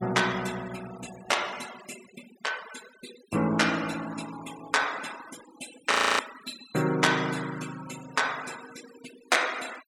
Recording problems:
noise reduction artefacts; signal-to-artefact ratio 15 dB
frozen audio; at 6 s

